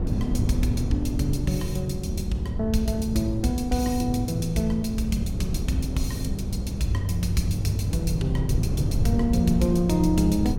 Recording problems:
wind noise; below 160 Hz, SNR 3 dB

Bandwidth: 17 kHz